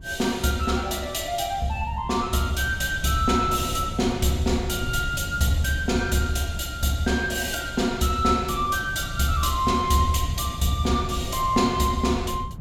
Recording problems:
wind noise; below 130 Hz, SNR 11 dB

